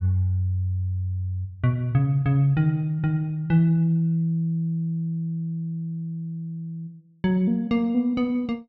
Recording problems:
none

